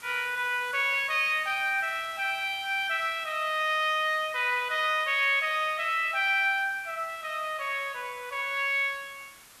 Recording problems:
hiss; SNR 22 dB

